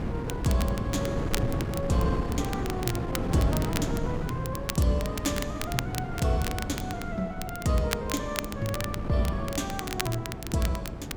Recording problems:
wind noise; below 350 Hz, SNR 3 dB
crackle; vinyl, SNR 7 dB

